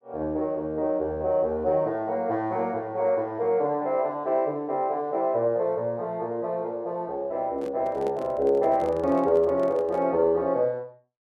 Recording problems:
microphone handling noise; from 7.5 to 10 s; peak -9 dB vs average level

